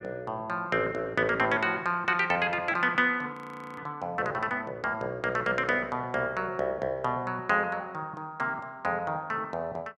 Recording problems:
frozen audio; at 3.5 s

